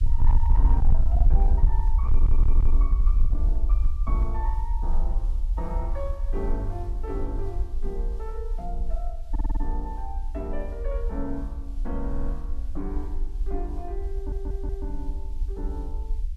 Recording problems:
distorted audio; hard clipping, signal-to-distortion ratio 10 dB
background hiss; SNR 25 dB
low-frequency rumble; below 50 Hz, strongest tone 22 Hz, SNR -10 dB
audio stuttering; 4 times, first at 2 s

